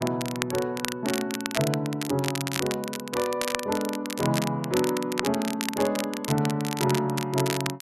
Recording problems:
crackling; vinyl, SNR 5 dB

